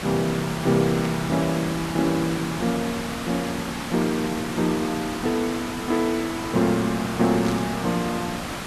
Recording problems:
hiss; slope -4 dB per octave, SNR 7 dB
static burst; at 1 s and at 7.5 s; peak -6 dB vs average level

